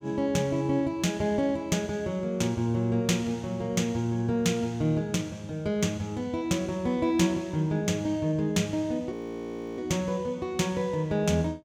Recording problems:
frozen audio; at 9 s for 0.5 s

